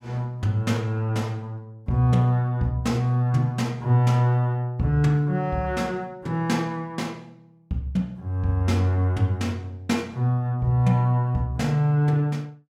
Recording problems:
none

